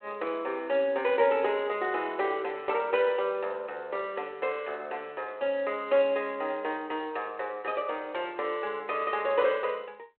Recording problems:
phone line; 320 Hz to 3.3 kHz, G.726

